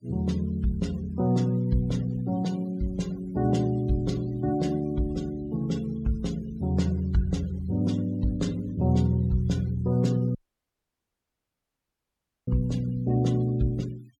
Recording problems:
noise reduction artefacts; signal-to-artefact ratio 23 dB
audio cutting out; at 10 s for 2 s

